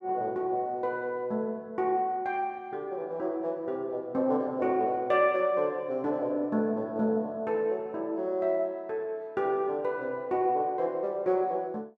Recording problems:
none

